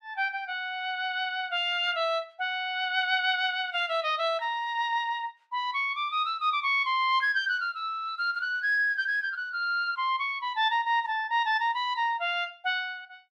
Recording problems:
none

